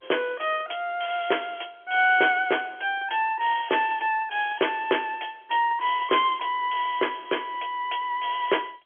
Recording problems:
phone line; 320 Hz to 3.4 kHz, G.711

